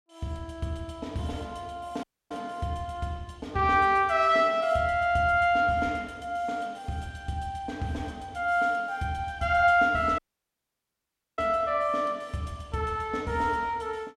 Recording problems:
audio cutting out; at 2 s and at 10 s for 1 s

